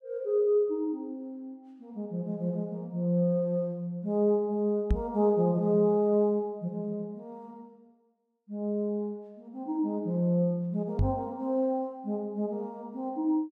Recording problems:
microphone thump; at 5 s and at 11 s; peak +6 dB vs average level

